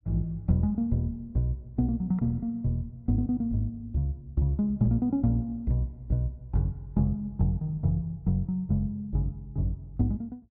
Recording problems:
none

